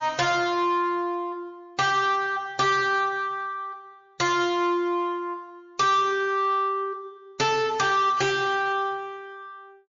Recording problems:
lossy codec; MP3, log-spectral distance 2 dB, nothing above 6.7 kHz
distorted audio; soft clipping, signal-to-distortion ratio 11 dB

